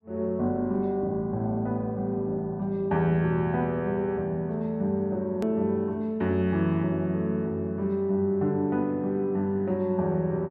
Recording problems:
click at an edit; at 5.5 s

